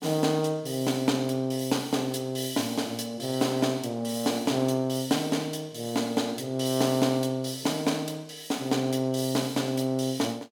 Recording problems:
none

